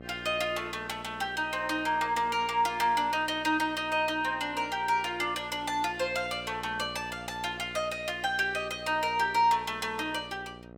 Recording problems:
hum; 60 Hz, harmonics up to 1.4 kHz, SNR 18 dB

